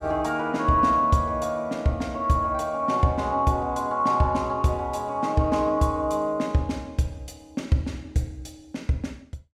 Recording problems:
none

